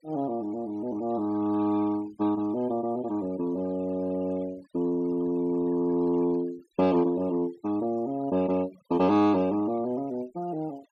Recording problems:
denoising artefacts; signal-to-artefact ratio 23 dB

